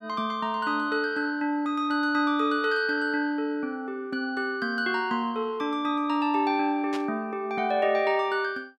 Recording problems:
burst of static; at 7 s; peak -7 dB vs average level

